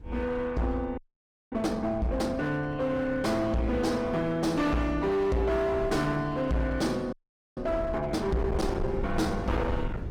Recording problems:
lossy compression; Opus, log-spectral distance 2 dB, nothing above 19 kHz
distorted audio; hard clipping, uneven, signal-to-distortion ratio 7 dB
wind noise; below 180 Hz, SNR 12 dB
audio freezing; at 1 s for 0.5 s and at 7 s

